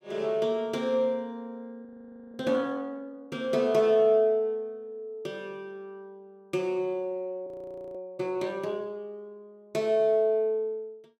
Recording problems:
audio freezing; at 2 s and at 7.5 s

